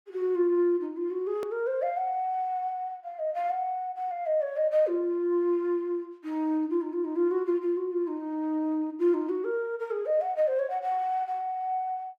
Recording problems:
hard cut with a click; at 1.5 s

